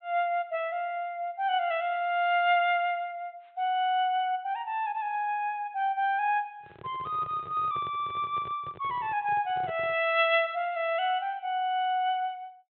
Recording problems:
low-pass filter; nothing above 3.9 kHz
microphone handling noise; from 6.5 to 10 s; peak -11 dB vs average level

